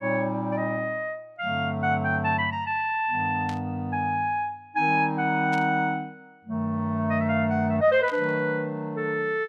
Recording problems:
static burst; at 3.5 s, at 5.5 s and at 8 s; peak -10 dB vs average level

